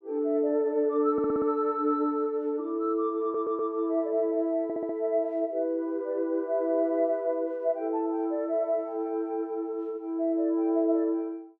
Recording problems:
stutter; at 1 s, at 3 s and at 4.5 s

